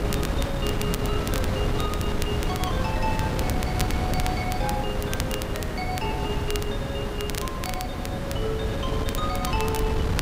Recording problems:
background hiss; slope -6 dB per octave, SNR 1 dB
wind noise; below 280 Hz, SNR -3 dB
crackle; vinyl, SNR 5 dB

